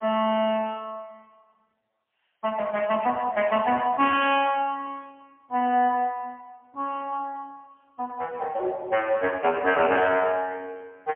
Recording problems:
phone line; 260 Hz to 3.3 kHz, AMR-NB, then MP3

